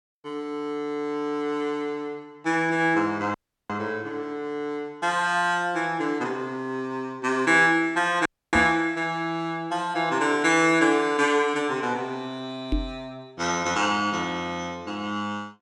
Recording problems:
dropout; at 3.5 s and at 8.5 s
microphone bump; at 8.5 s and at 13 s; peak +2 dB vs average level

